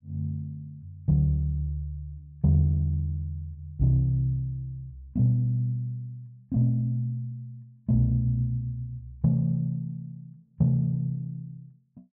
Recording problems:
none

